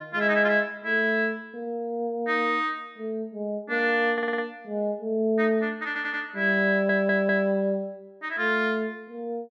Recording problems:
audio stuttering; at 4 s, at 6 s and at 6.5 s

